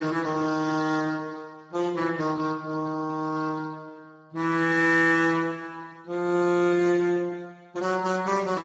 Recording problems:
lossy compression; Speex, log-spectral distance 4 dB, nothing above 7.6 kHz

